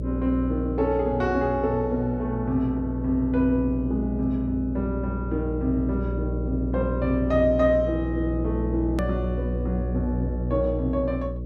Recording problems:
hum; 60 Hz, harmonics up to 600 Hz, SNR 4 dB
edit click; at 9 s

